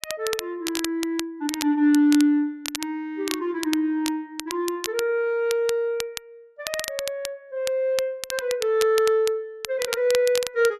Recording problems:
crackle; vinyl, SNR 9 dB

